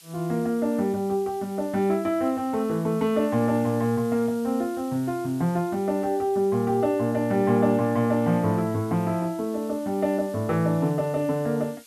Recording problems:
hiss; SNR 24 dB

